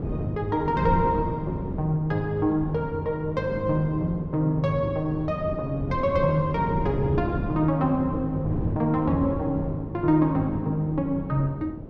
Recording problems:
wind noise; below 310 Hz, SNR 8 dB

